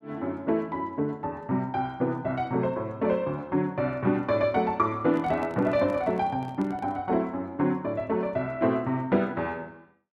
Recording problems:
microphone handling noise; from 5 to 7 s; peak -9 dB vs average level

